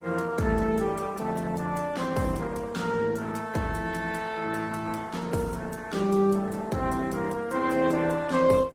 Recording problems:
lossy compression; Opus, then Opus, log-spectral distance 4 dB, nothing above 19 kHz

